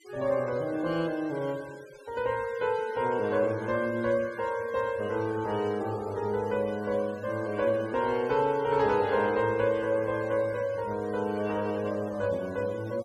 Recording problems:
noise reduction artefacts; signal-to-artefact ratio 21 dB

